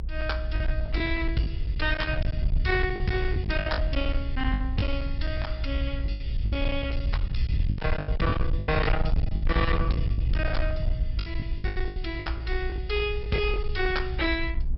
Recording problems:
treble cut off; nothing above 5.4 kHz
distorted audio; hard clipping, uneven, signal-to-distortion ratio 11 dB
rumble; below 60 Hz, SNR 4 dB
wind on the microphone; below 90 Hz, SNR 1 dB
lost packets; 10% of the sound replaced, filled with the last packet

